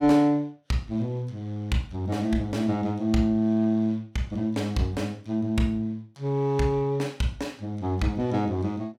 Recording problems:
none

